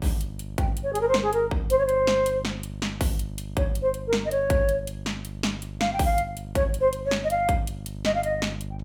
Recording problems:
hum; 50 Hz, harmonics up to 650 Hz, SNR 12 dB

